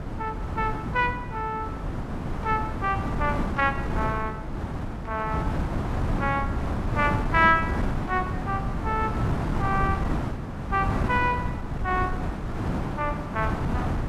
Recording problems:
wind on the microphone; below 350 Hz, SNR 2 dB

